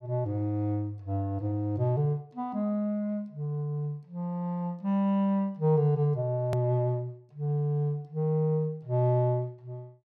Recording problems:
hard cut with a click; at 6.5 s

